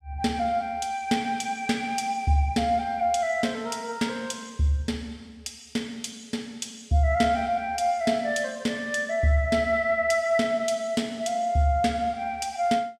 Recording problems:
none

